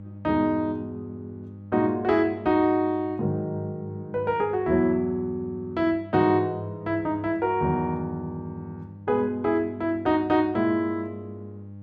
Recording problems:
electrical hum; 50 Hz, harmonics up to 600 Hz, SNR 17 dB

